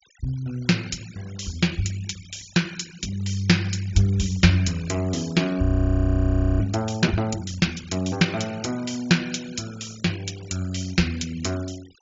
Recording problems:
treble cut off; nothing above 7.3 kHz
noise reduction artefacts; signal-to-artefact ratio 20 dB
audio freezing; at 5.5 s for 1 s

